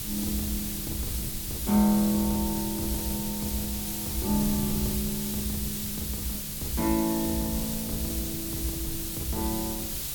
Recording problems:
hiss; slope +2 dB per octave, SNR 2 dB
wind noise; below 150 Hz, SNR 11 dB

